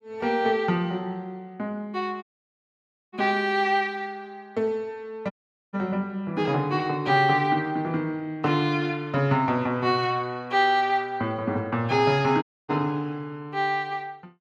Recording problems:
dropout; at 2 s for 1 s, at 5.5 s and at 12 s

